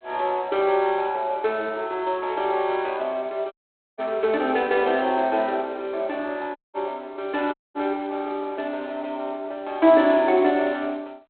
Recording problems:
phone line; 280 Hz to 3.9 kHz, G.726
audio cutting out; at 3.5 s, at 6.5 s and at 7.5 s

